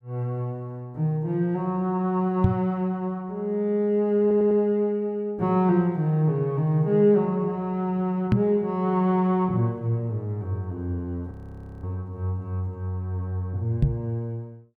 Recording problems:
microphone bump; at 2.5 s, at 8.5 s and at 14 s; peak +8 dB vs average level
stutter; at 4 s
audio freezing; at 11 s for 0.5 s

